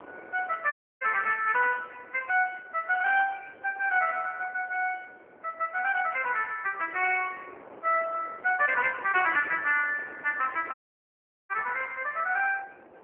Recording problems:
phone line; 390 Hz to 3.1 kHz, AMR-NB
wind noise; below 910 Hz, SNR 22 dB
audio cutting out; at 0.5 s and at 11 s for 1 s

